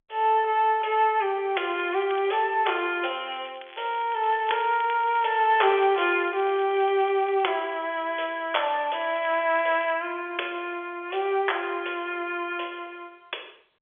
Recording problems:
telephone audio; 340 Hz to 3.5 kHz, G.711
crackling; at 1.5 s, from 3.5 to 7.5 s and at 9 s; loose cable, SNR 21 dB

